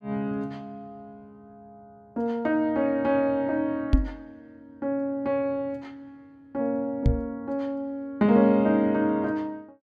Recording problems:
microphone bump; at 4 s and at 7 s; peak +9 dB vs average level

